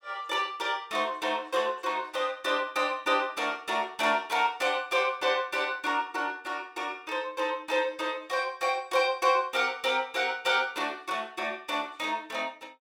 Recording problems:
none

